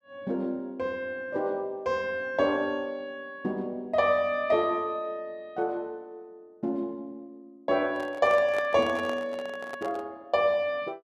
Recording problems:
microphone handling noise; from 8 to 10 s; peak -4 dB vs average level

